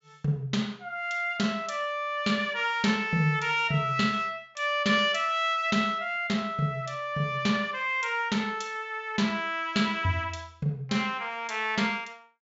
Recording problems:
treble missing; nothing above 7.4 kHz

